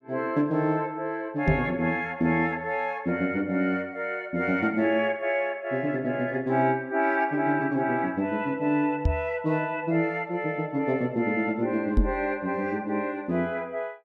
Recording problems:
microphone bump; at 1.5 s, at 9 s and at 12 s; peak +7 dB vs average level

